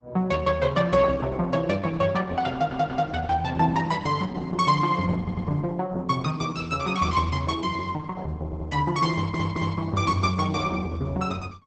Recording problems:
lossy codec; Opus, log-spectral distance 4 dB, nothing above 8 kHz
audio stuttering; 4 times, first at 2.5 s

